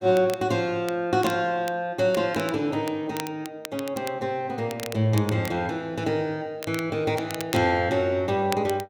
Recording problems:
crackling; vinyl, SNR 14 dB

